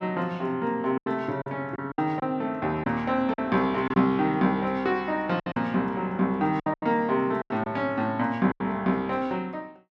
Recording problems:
lost packets; 8% of the sound replaced, filled with silence

